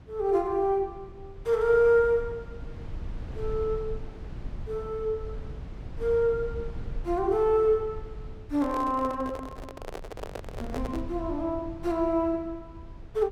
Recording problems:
low-frequency rumble; below 100 Hz, SNR 14 dB
handling noise; from 8.5 to 11 s; peak -5 dB vs average level

